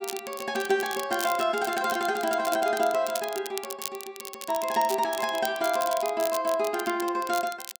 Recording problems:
crackling; vinyl, SNR 11 dB

